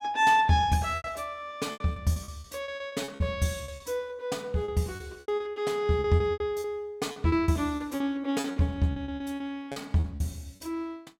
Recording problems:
packet loss; 15% of the sound replaced, filled with repeated pitch periods

